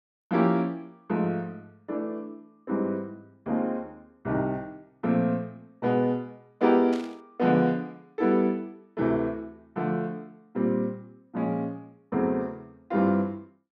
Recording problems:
burst of static; at 7 s; peak -10 dB vs average level

